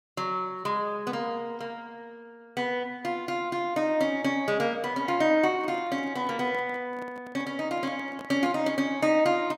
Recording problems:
microphone handling noise; from 5.5 to 8.5 s; peak -10 dB vs average level

